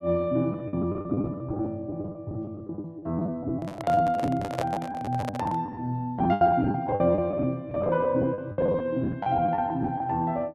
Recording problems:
lost packets; 17% of the sound replaced, filled with the last packet
microphone handling noise; from 3.5 to 5.5 s; peak +1 dB vs average level

